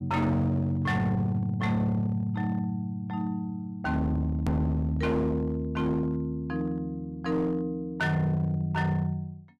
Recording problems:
distortion; hard clipping, signal-to-distortion ratio 12 dB
click at an edit; at 4.5 s

